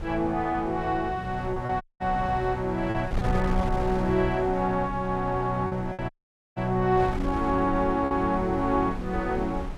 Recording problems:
wind noise; below 170 Hz, SNR 9 dB
lost packets; 4% of the sound replaced, filled with repeated pitch periods
dropout; at 2 s and at 6 s

